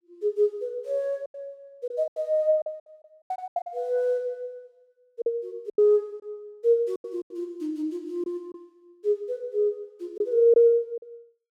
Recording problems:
packet loss; 9% of the sound replaced, filled with silence

